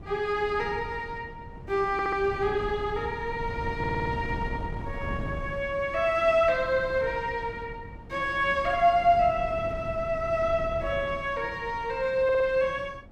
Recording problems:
wind noise; below 230 Hz, SNR 13 dB
audio stuttering; at 2 s, at 4 s and at 12 s

